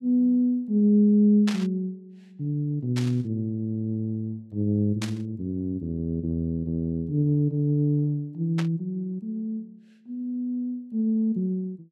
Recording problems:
burst of static; 4 times, first at 1.5 s; peak -3 dB vs average level

